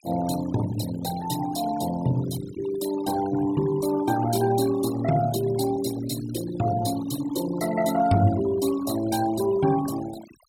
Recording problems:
noise reduction artefacts; signal-to-artefact ratio 14 dB

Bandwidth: 17 kHz